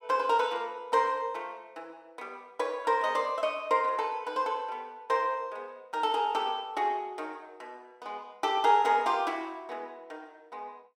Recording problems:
none

